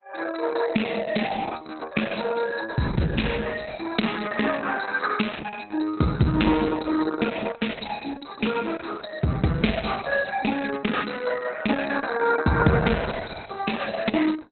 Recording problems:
lossy compression; Opus, log-spectral distance 8 dB, nothing above 4.1 kHz

